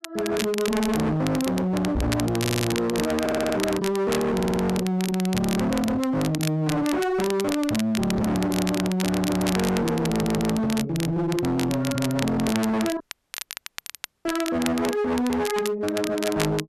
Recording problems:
distortion; hard clipping, signal-to-distortion ratio 6 dB
crackle; vinyl, SNR 9 dB
knock on the microphone; at 2 s and at 8 s; peak +8 dB vs average level
audio stuttering; 4 times, first at 2.5 s
dropout; at 13 s for 1.5 s

